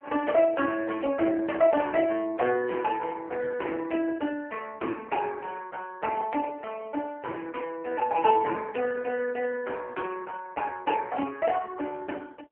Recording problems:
telephone audio; 240 Hz to 2.9 kHz, AMR-NB

